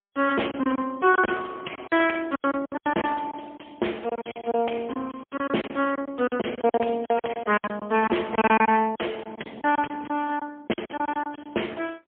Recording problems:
phone line; 240 Hz to 3.3 kHz, AMR-NB, then MP3
distorted audio; soft clipping, signal-to-distortion ratio 10 dB
lost packets; 15% of the sound replaced, filled with silence

